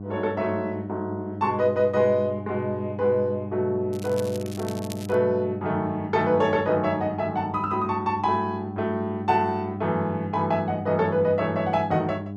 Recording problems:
electrical hum; 50 Hz, harmonics up to 800 Hz, SNR 10 dB
crackling; from 4 to 5 s; loose cable, SNR 18 dB

